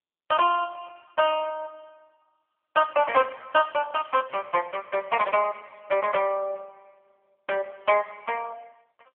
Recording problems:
telephone audio; 370 Hz to 3.3 kHz, AMR-NB

